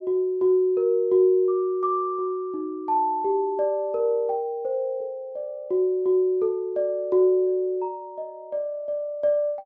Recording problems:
none

